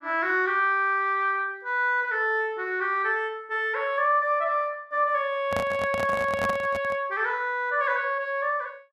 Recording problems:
handling noise; from 5.5 to 7 s; peak -2 dB vs average level

